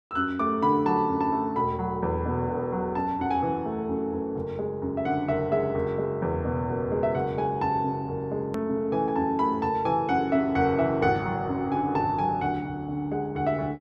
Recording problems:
edit click; at 8.5 s

